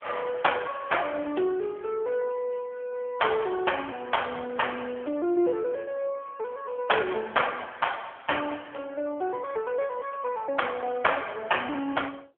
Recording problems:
phone line; 280 Hz to 3.4 kHz, AMR-NB

